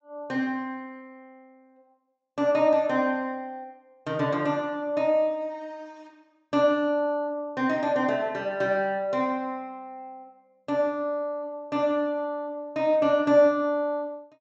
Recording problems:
treble missing; nothing above 8 kHz

